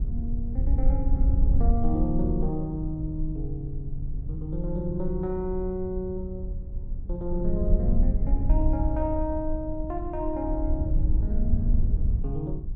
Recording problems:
low-frequency rumble; below 64 Hz, SNR -3 dB

